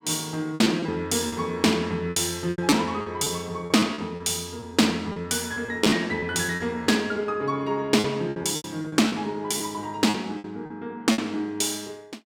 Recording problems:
packet loss; 11% of the sound replaced, filled with repeated pitch periods

